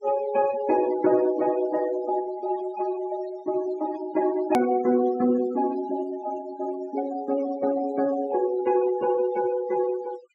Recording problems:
treble missing; nothing above 8 kHz
denoising artefacts; signal-to-artefact ratio 18 dB
edit click; at 4.5 s

